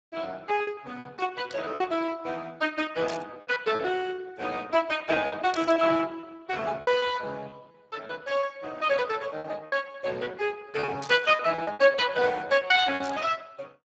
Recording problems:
codec artefacts; Speex, log-spectral distance 5 dB
lost packets; 11% of the sound replaced, filled with repeated pitch periods
static burst; 5 times, first at 1.5 s; peak -8 dB vs average level

